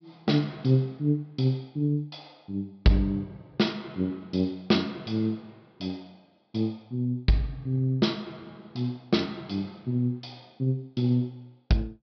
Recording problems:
treble cut off; nothing above 5.5 kHz

